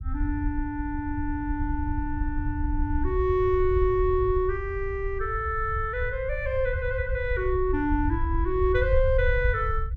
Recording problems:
rumble; below 78 Hz, SNR 4 dB

